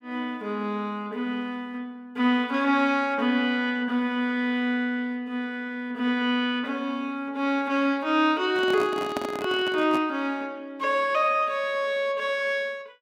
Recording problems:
microphone handling noise; from 8.5 to 10 s; peak 0 dB vs average level

